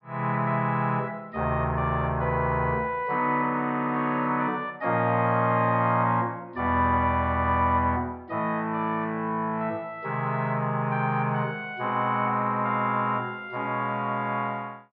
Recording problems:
treble cut off; nothing above 5.5 kHz

